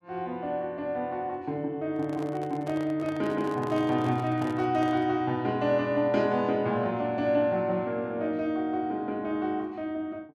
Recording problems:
handling noise; from 2 to 5 s; peak -9 dB vs average level

